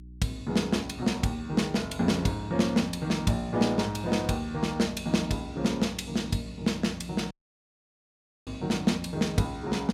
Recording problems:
hum; 60 Hz, harmonics up to 360 Hz, SNR 19 dB
dropout; at 7.5 s for 1 s

